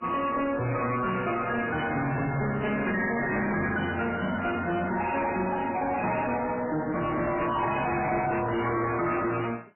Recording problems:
lossy codec; MP3, then AAC, log-spectral distance 6 dB, nothing above 2.5 kHz
distorted audio; hard clipping, signal-to-distortion ratio 6 dB

